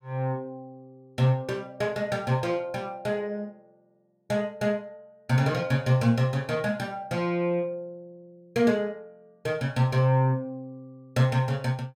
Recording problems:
none

